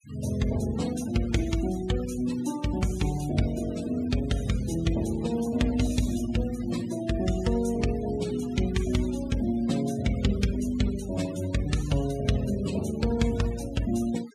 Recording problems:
noise reduction artefacts; signal-to-artefact ratio 16 dB

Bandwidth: 14.5 kHz